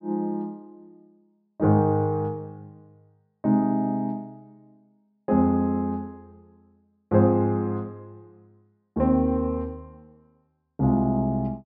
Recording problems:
treble cut off; nothing above 5.5 kHz

